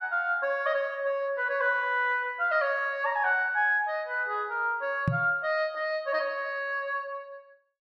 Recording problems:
microphone thump; at 5 s; peak +4 dB vs average level

